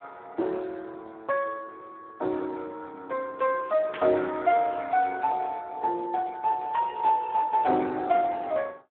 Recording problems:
telephone audio; 280 Hz to 2.8 kHz, Speex
static burst; at 4 s; peak -5 dB vs average level

